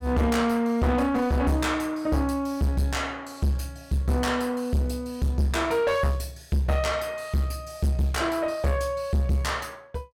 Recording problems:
distorted audio; soft clipping, signal-to-distortion ratio 7 dB

